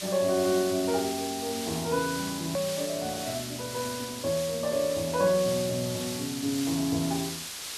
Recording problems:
background hiss; slope +2 dB per octave, SNR 6 dB
click at an edit; at 2.5 s

